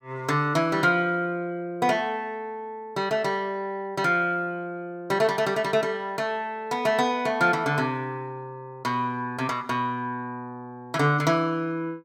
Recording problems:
none

